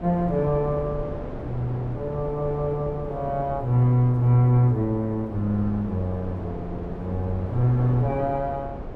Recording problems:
wind noise; below 460 Hz, SNR 11 dB

